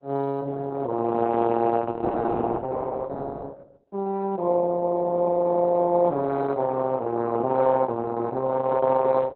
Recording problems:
lossy compression; Opus, log-spectral distance 3 dB, nothing above 4.1 kHz

